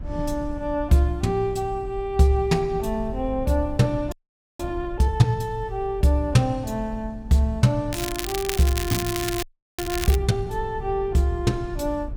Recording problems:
rumble; below 76 Hz, SNR 13 dB
frozen audio; at 4 s and at 9.5 s
crackling; from 8 to 10 s; loose cable, SNR 7 dB

